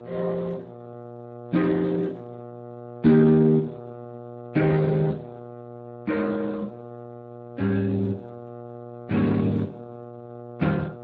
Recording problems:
codec artefacts; Speex, log-spectral distance 2 dB
electrical hum; 60 Hz, harmonics up to 1.4 kHz, SNR 17 dB

